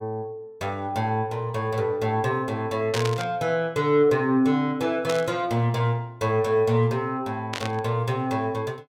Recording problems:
static burst; at 3 s, at 5 s and at 7.5 s; peak -1 dB vs average level

